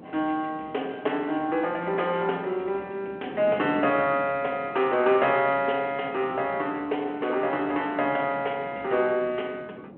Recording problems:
telephone audio; 240 Hz to 3.3 kHz, G.726
wind on the microphone; below 470 Hz, SNR 18 dB

